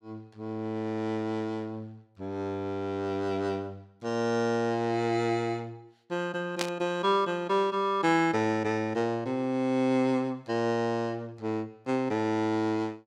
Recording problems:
burst of static; at 6.5 s; peak +3 dB vs average level

